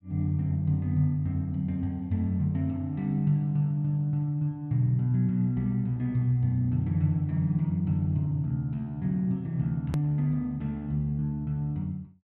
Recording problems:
hard cut with a click; at 10 s

